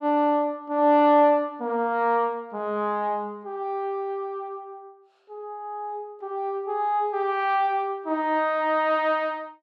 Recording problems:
none

